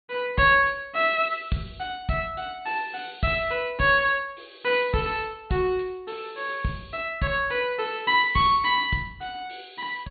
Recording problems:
treble missing; nothing above 4.5 kHz

